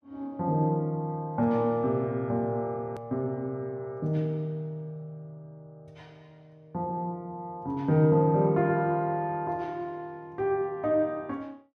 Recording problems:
hard cut with a click; at 3 s

